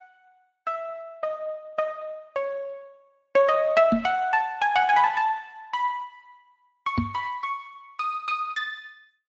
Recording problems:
lossy codec; Speex, then MP3, log-spectral distance 2 dB
knock on the microphone; at 4 s and at 7 s; peak +6 dB vs average level

